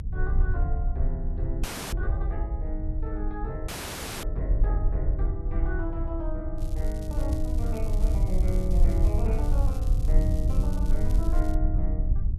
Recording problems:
rumble; below 64 Hz, SNR -7 dB
audio freezing; at 1.5 s and at 3.5 s for 0.5 s
crackling; from 6.5 to 12 s; loose cable, SNR 15 dB

